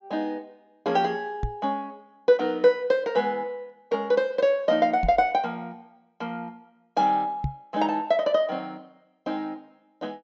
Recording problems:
treble missing; nothing above 8 kHz
knock on the microphone; at 1.5 s, at 5 s and at 7.5 s; peak +1 dB vs average level

